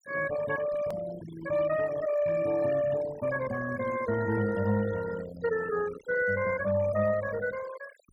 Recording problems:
denoising artefacts; signal-to-artefact ratio 14 dB
edit click; at 1 s

